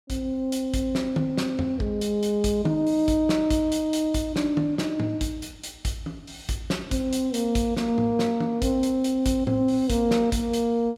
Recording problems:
none

